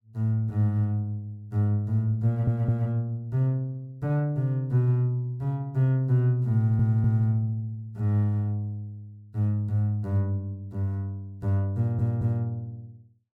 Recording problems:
audio stuttering; at 2.5 s, at 6.5 s and at 12 s

